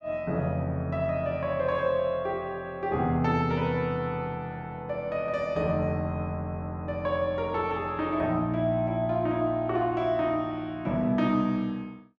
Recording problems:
none

